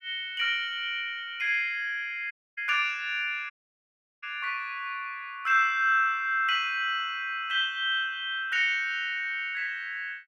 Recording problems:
dropout; at 2.5 s and at 3.5 s for 0.5 s

